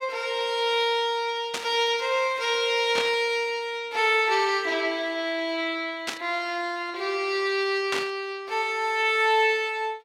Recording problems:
static burst; 4 times, first at 1.5 s; peak 0 dB vs average level

